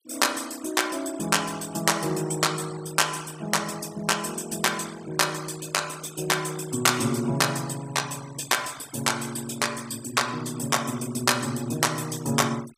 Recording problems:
denoising artefacts; signal-to-artefact ratio 18 dB

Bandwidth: 15.5 kHz